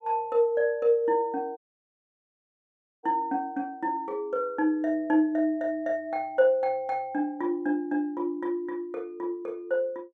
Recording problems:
audio cutting out; at 1.5 s for 1.5 s

